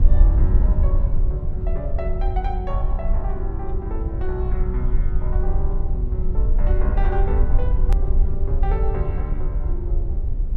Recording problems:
low-frequency rumble; below 56 Hz, SNR -9 dB
click at an edit; at 8 s

